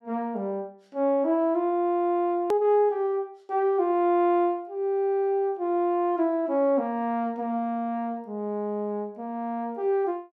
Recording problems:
edit click; at 2.5 s

